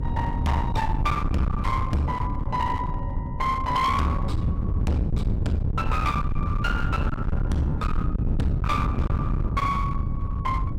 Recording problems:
distorted audio; hard clipping, uneven, signal-to-distortion ratio 8 dB
hum; 50 Hz, harmonics up to 300 Hz, SNR 16 dB
wind on the microphone; below 150 Hz, SNR 0 dB

